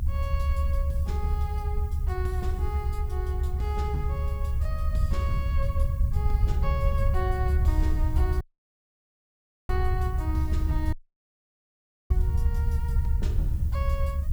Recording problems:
hiss; slope 0 dB per octave, SNR 19 dB
low-frequency rumble; below 76 Hz, SNR -9 dB
audio cutting out; at 8.5 s for 1.5 s and at 11 s for 1 s

